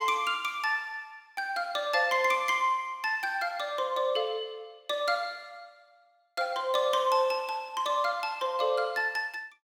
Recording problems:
none

